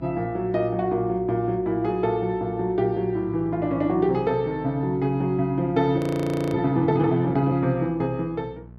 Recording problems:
hum; 60 Hz, harmonics up to 840 Hz, SNR 20 dB
frozen audio; at 6 s for 0.5 s

